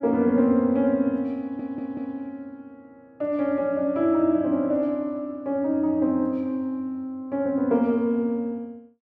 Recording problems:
stutter; at 1.5 s

